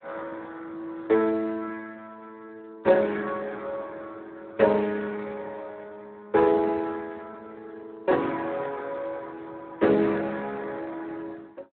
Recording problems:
telephone audio; 240 Hz to 2.8 kHz, Speex

